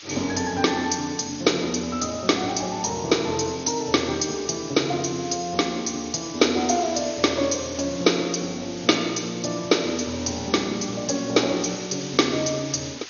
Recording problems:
lossy codec; MP2, log-spectral distance 15 dB, nothing above 6.7 kHz
background hiss; slope +4 dB per octave, SNR 14 dB

